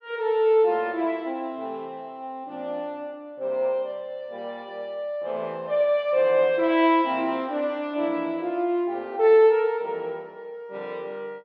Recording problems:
none

